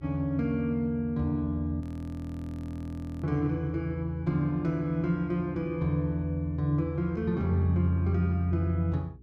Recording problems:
hum; 60 Hz, harmonics up to 420 Hz, SNR 23 dB
frozen audio; at 2 s for 1.5 s

